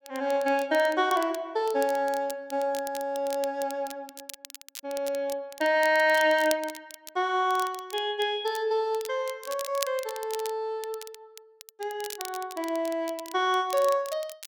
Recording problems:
crackling; vinyl, SNR 15 dB

